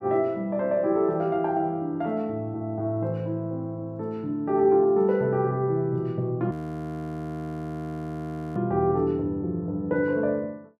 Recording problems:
audio freezing; at 6.5 s for 2 s

